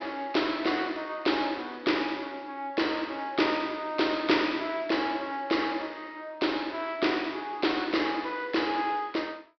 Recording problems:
low-pass filter; nothing above 5.5 kHz

